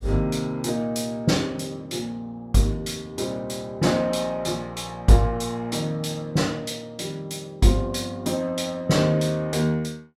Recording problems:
none

